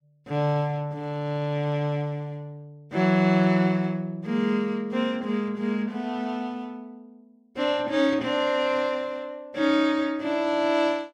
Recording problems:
none

